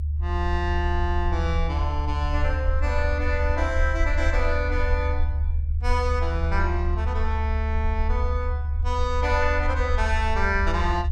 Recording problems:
low-frequency rumble; below 76 Hz, SNR -1 dB

